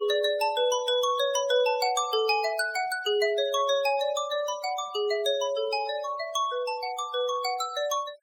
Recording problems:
noise reduction artefacts; signal-to-artefact ratio 17 dB

